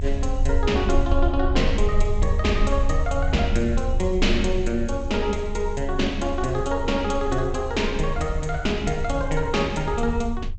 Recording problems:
codec artefacts; G.722, log-spectral distance 3 dB, nothing above 7.8 kHz
low-frequency rumble; below 72 Hz, strongest tone 24 Hz, SNR 3 dB

